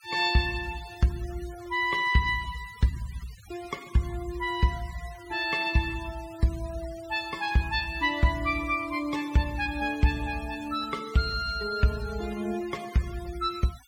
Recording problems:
noise reduction artefacts; signal-to-artefact ratio 19 dB

